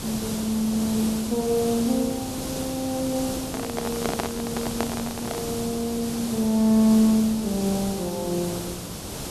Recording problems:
hiss; SNR 7 dB
handling noise; from 3.5 to 5.5 s; peak +2 dB vs average level

